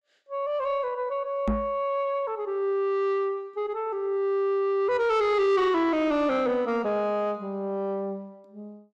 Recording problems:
distortion; soft clipping, signal-to-distortion ratio 12 dB
microphone thump; at 1.5 s; peak +3 dB vs average level

